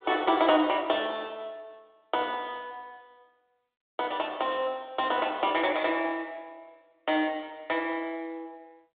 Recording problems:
telephone audio; 260 Hz to 3.6 kHz, G.726

